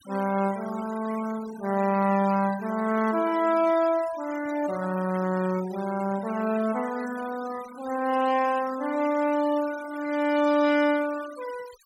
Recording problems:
denoising artefacts; signal-to-artefact ratio 16 dB

